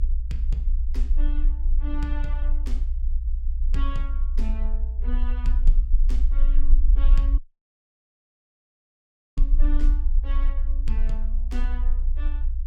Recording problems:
rumble; below 44 Hz, strongest tone 24 Hz, SNR -13 dB
dropout; at 7.5 s for 2 s

